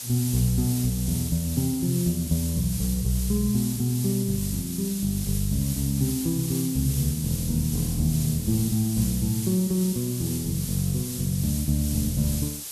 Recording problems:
hiss; SNR 7 dB

